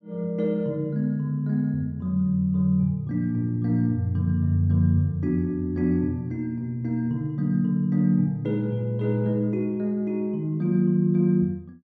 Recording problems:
none

